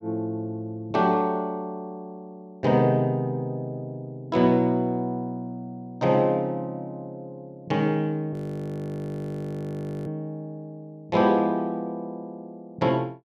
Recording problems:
frozen audio; at 8.5 s for 1.5 s

